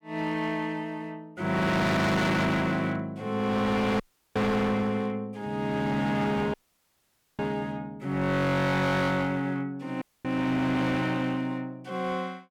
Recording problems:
distorted audio; hard clipping, signal-to-distortion ratio 7 dB
audio cutting out; at 4 s, at 6.5 s for 1 s and at 10 s

